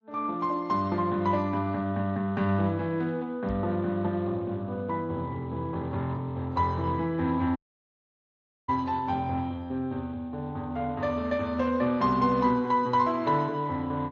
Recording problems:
lossy codec; MP3, then Speex, log-spectral distance 2 dB
microphone bump; at 3.5 s; peak -6 dB vs average level
dropout; at 7.5 s for 1 s

